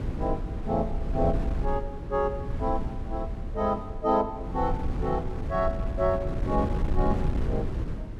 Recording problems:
wind noise; below 130 Hz, SNR 2 dB

